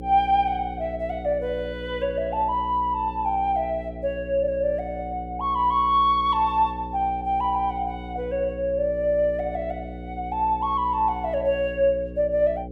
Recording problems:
hum; 60 Hz, harmonics up to 540 Hz, SNR 13 dB

